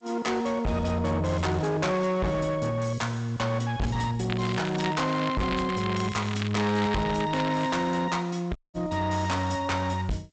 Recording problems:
codec artefacts; G.722, log-spectral distance 5 dB, nothing above 7.8 kHz
distorted audio; hard clipping, signal-to-distortion ratio 7 dB
crackle; from 4.5 to 7.5 s; loose cable, SNR 11 dB
dropout; at 8.5 s

